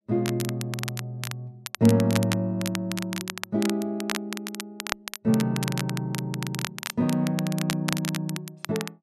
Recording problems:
crackle; vinyl, SNR 7 dB

